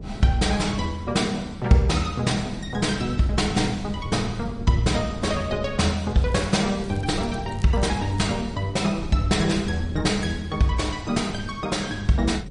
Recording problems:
lossy compression; MP3, log-spectral distance 3 dB, nothing above 10.1 kHz
hum; 50 Hz, harmonics up to 550 Hz, SNR 26 dB
wind noise; below 190 Hz, SNR 12 dB
crackling; from 6 to 8.5 s; loose cable, SNR 25 dB

